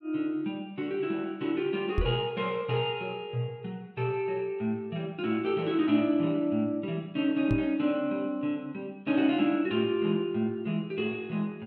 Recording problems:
microphone bump; at 2 s and at 7.5 s; peak +4 dB vs average level

